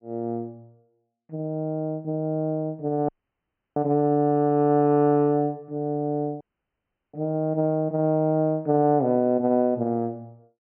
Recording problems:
low-pass filter; nothing above 3.1 kHz
audio cutting out; at 3 s for 0.5 s and at 6.5 s for 0.5 s

